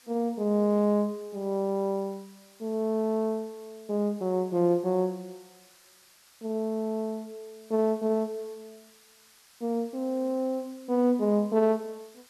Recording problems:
background hiss; slope +2 dB per octave, SNR 27 dB

